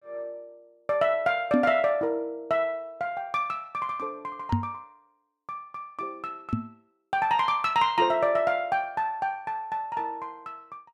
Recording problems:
microphone thump; at 1.5 s, at 4.5 s and at 6.5 s; peak +6 dB vs average level

